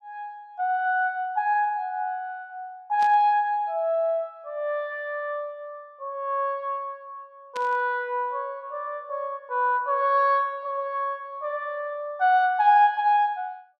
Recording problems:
static burst; at 3 s and at 7.5 s; peak -11 dB vs average level

